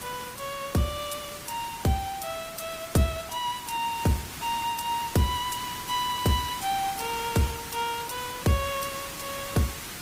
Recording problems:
codec artefacts; Opus, log-spectral distance 7 dB, nothing above 15.5 kHz
background hiss; slope -1 dB per octave, SNR 8 dB

